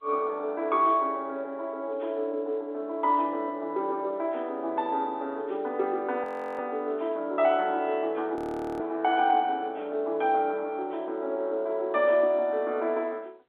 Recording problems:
telephone audio; 300 Hz to 3.8 kHz, G.711
frozen audio; at 6 s and at 8.5 s

